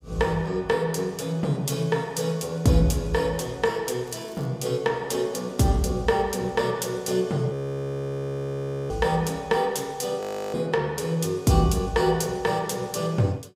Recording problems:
crackle; at 4 s; loose cable, SNR 28 dB
audio freezing; at 7.5 s for 1.5 s and at 10 s

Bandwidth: 15.5 kHz